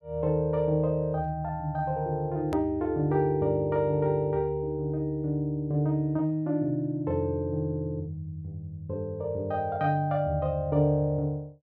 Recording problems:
edit click; at 2.5 s

